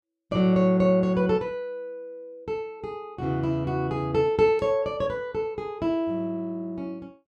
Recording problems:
none

